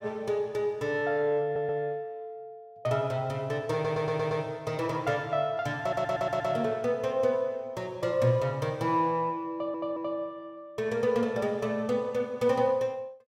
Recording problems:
stutter; 4 times, first at 1.5 s

